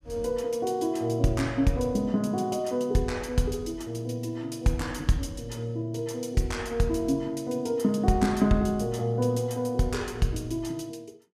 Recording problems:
none

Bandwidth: 15 kHz